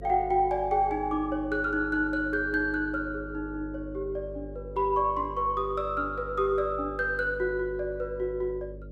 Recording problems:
hum; 50 Hz, harmonics up to 600 Hz, SNR 14 dB

